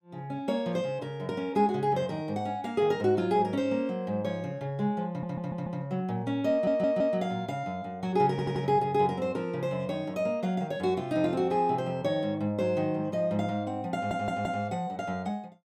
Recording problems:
stutter; 4 times, first at 5 s

